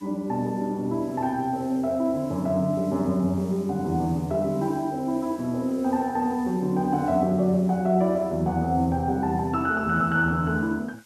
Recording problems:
hiss; slope +1 dB per octave, SNR 27 dB

